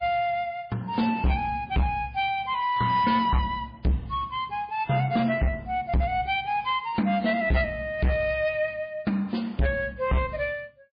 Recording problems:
lossy compression; MP3, log-spectral distance 2 dB
distorted audio; hard clipping, signal-to-distortion ratio 6 dB

